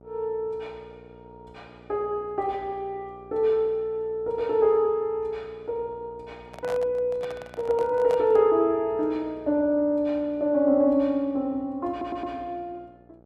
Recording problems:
hum; 60 Hz, harmonics up to 1.4 kHz, SNR 25 dB
microphone handling noise; from 6.5 to 8.5 s; peak -6 dB vs average level
stutter; at 12 s

